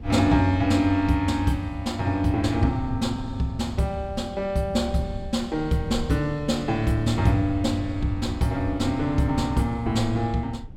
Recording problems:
low-frequency rumble; below 110 Hz, SNR 15 dB

